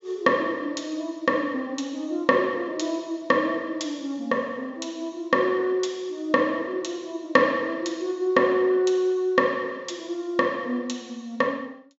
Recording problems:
treble cut off; nothing above 7.2 kHz

